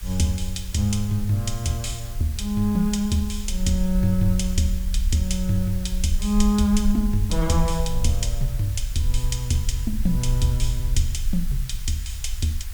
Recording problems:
background hiss; SNR 17 dB
rumble; below 52 Hz, SNR 5 dB

